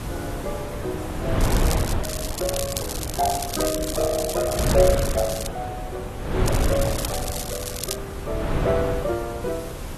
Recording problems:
lossy codec; AAC, log-spectral distance 7 dB
background hiss; slope -1 dB per octave, SNR 16 dB
wind on the microphone; below 470 Hz, SNR 0 dB
crackle; at 1.5 s, from 2 to 5.5 s and from 6.5 to 8 s; loose cable, SNR 3 dB

